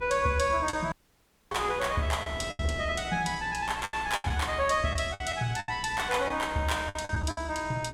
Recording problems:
hum; 60 Hz, harmonics up to 420 Hz, SNR 19 dB
wind noise; below 490 Hz, SNR 19 dB
lost packets; 9% of the sound replaced, filled with the last packet
dropout; at 1 s for 0.5 s

